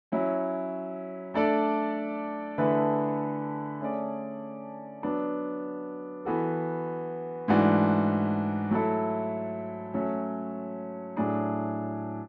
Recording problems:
none

